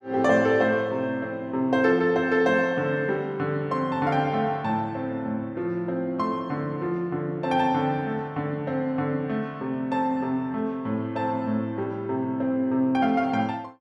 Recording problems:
none

